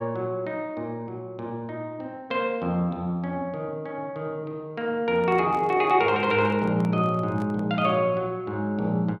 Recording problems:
handling noise; from 5 to 8 s; peak -9 dB vs average level

